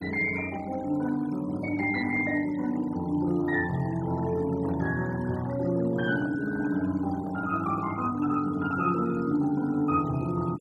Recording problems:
noise reduction artefacts; signal-to-artefact ratio 18 dB
microphone handling noise; from 6 to 8 s; peak -14 dB vs average level

